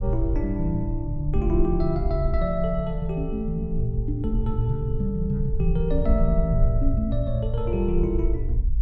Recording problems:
low-frequency rumble; below 60 Hz, SNR 2 dB

